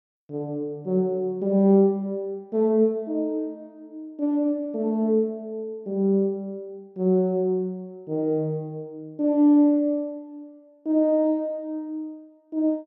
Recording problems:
none

